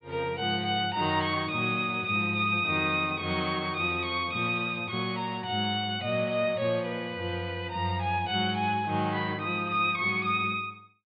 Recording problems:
treble missing; nothing above 4.8 kHz

